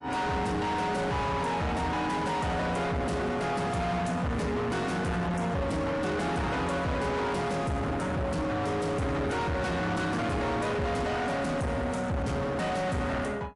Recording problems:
codec artefacts; MP3, log-spectral distance 2 dB, nothing above 11 kHz
distortion; soft clipping, signal-to-distortion ratio 5 dB

